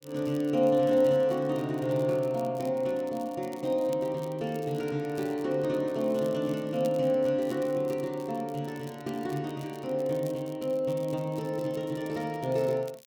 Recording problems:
crackling; vinyl, SNR 24 dB

